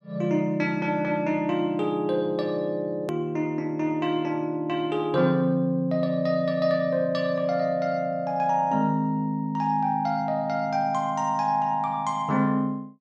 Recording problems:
hard cut with a click; at 3 s

